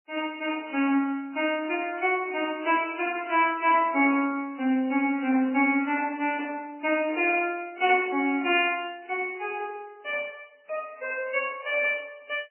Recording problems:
lossy codec; MP3, then AAC, log-spectral distance 4 dB, nothing above 2.4 kHz

